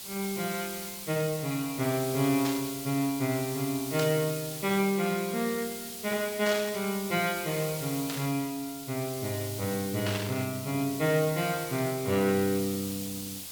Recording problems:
hiss; SNR 8 dB
static burst; 5 times, first at 2.5 s; peak -1 dB vs average level

